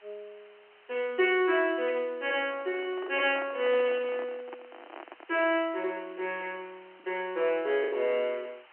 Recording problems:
telephone audio; 300 Hz to 3.2 kHz, G.711
background hiss; SNR 27 dB
packet loss; 2% of the sound replaced, filled with the last packet
handling noise; from 2.5 to 5.5 s; peak -10 dB vs average level

